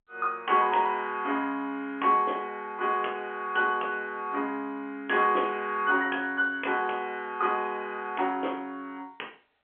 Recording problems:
telephone audio; 300 Hz to 3.3 kHz, G.711

